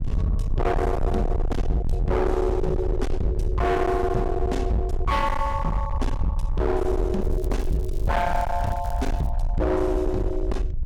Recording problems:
distorted audio; hard clipping, signal-to-distortion ratio 6 dB
rumble; below 94 Hz, SNR 2 dB
crackling; from 7 to 9.5 s; loose cable, SNR 27 dB

